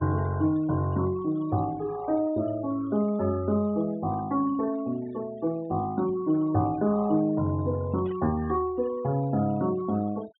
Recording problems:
low-pass filter; nothing above 3.8 kHz
noise reduction artefacts; signal-to-artefact ratio 22 dB
burst of static; at 8 s; peak -20 dB vs average level

